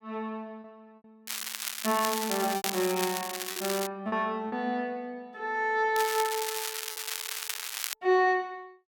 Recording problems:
packet loss; 4% of the sound replaced, filled with repeated pitch periods
crackle; from 1.5 to 4 s and from 6 to 8 s; loose cable, SNR 4 dB

